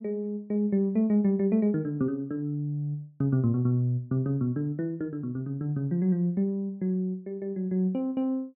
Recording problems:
none

